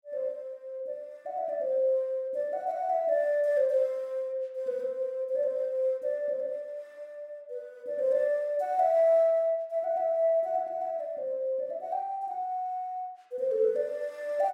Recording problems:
none

